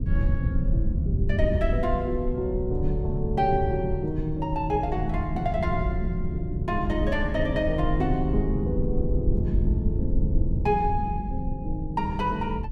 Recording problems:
rumble; below 110 Hz, SNR 1 dB

